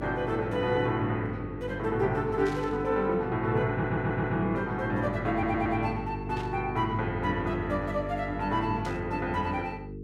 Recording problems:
electrical hum; 50 Hz, harmonics up to 450 Hz, SNR 9 dB
static burst; at 2.5 s, at 6.5 s and at 9 s; peak -11 dB vs average level
audio stuttering; at 3.5 s and at 5.5 s

